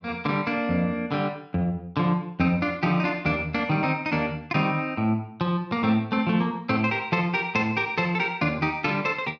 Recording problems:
none

